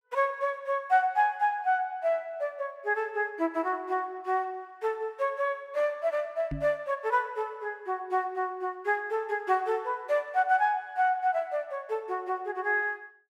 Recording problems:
microphone thump; at 6.5 s; peak -2 dB vs average level

